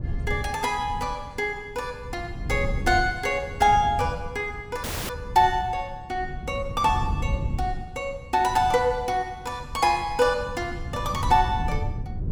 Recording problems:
wind on the microphone; below 120 Hz, SNR 9 dB
audio cutting out; at 5 s

